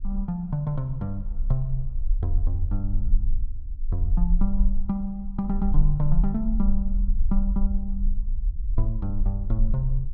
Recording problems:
rumble; below 40 Hz, strongest tone 20 Hz, SNR -1 dB

